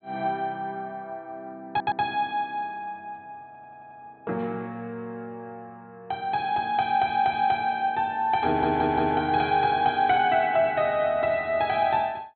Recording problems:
treble missing; nothing above 4.2 kHz
audio stuttering; 4 times, first at 1.5 s

